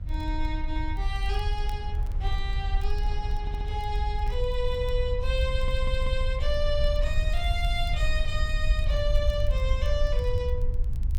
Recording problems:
rumble; below 62 Hz, SNR -3 dB
wind on the microphone; below 890 Hz, SNR 21 dB
crackle; vinyl, SNR 27 dB
audio stuttering; at 3.5 s and at 5.5 s

